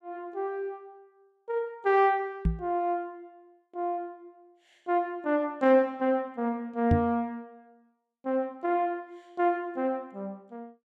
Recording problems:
microphone bump; at 2.5 s and at 7 s; peak +7 dB vs average level

